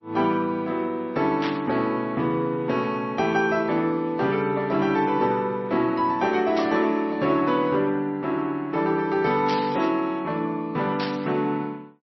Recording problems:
lossy compression; MP3, log-spectral distance 2 dB, nothing above 5 kHz
static burst; 4 times, first at 1.5 s; peak -4 dB vs average level

